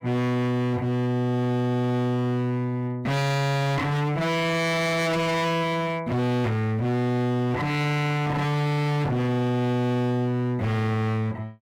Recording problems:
distortion; hard clipping, signal-to-distortion ratio 6 dB

